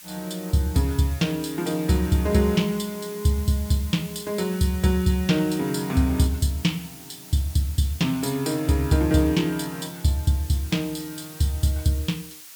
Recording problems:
background hiss; slope +3 dB per octave, SNR 16 dB

